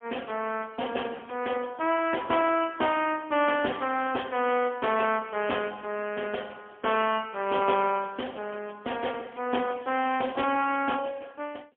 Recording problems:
phone line; 240 Hz to 3.3 kHz, AMR-NB, then MP3

